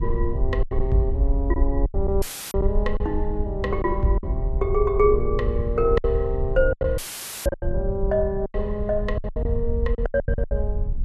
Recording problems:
rumble; below 120 Hz, SNR 10 dB
wind noise; below 62 Hz, SNR 3 dB
lost packets; 11% of the sound replaced, filled with silence
dropout; at 2 s and at 7 s; filled with static

